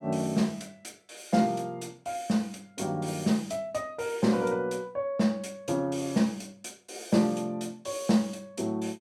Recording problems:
none

